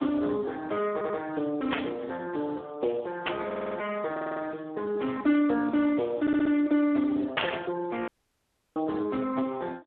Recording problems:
telephone audio; 280 Hz to 2.9 kHz, Speex
audio stuttering; 4 times, first at 1 s
static burst; at 1.5 s, at 3.5 s and at 7.5 s; peak +5 dB vs average level
audio cutting out; at 8 s for 0.5 s

